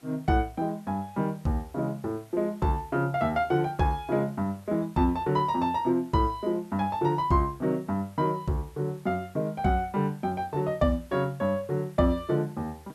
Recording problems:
background hiss; slope -2 dB per octave, SNR 29 dB

